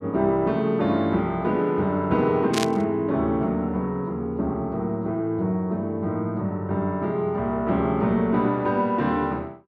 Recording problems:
static burst; at 2.5 s; peak +2 dB vs average level

